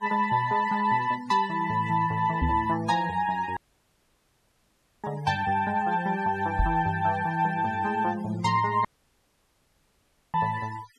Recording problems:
noise reduction artefacts; signal-to-artefact ratio 21 dB
knock on the microphone; at 2.5 s and at 6.5 s; peak +3 dB vs average level
dropout; at 3.5 s for 1.5 s and at 9 s for 1.5 s

